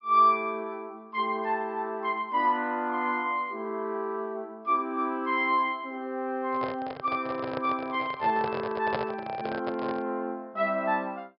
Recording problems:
treble cut off; nothing above 5.5 kHz
microphone handling noise; from 6.5 to 10 s; peak +2 dB vs average level

